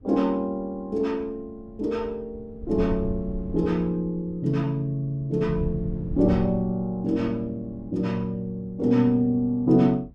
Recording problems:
wind noise; below 120 Hz, SNR 14 dB

